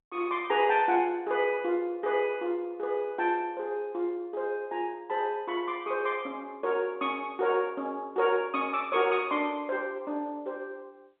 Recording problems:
phone line; 240 Hz to 3.7 kHz, G.711

